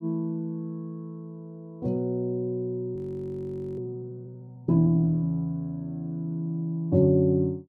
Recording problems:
audio freezing; at 3 s for 1 s

